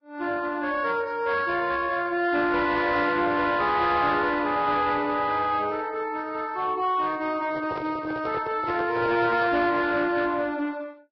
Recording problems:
lossy compression; Vorbis, log-spectral distance 3 dB, nothing above 5.2 kHz
distorted audio; soft clipping, signal-to-distortion ratio 11 dB
handling noise; from 7.5 to 9.5 s; peak -4 dB vs average level

